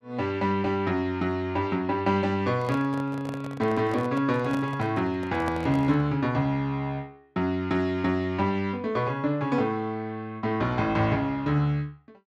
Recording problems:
microphone handling noise; from 2.5 to 6 s; peak -4 dB vs average level

